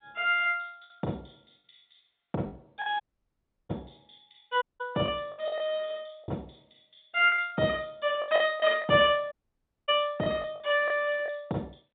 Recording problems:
telephone audio; 190 Hz to 3.7 kHz, G.711
packet loss; 8% of the sound replaced, filled with the last packet
dropout; at 3 s for 0.5 s, at 4.5 s and at 9.5 s for 0.5 s

